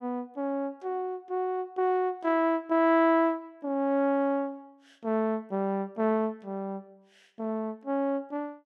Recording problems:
none

